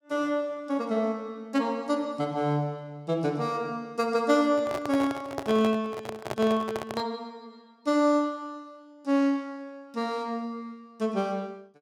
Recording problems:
microphone handling noise; from 4.5 to 7 s; peak -1 dB vs average level

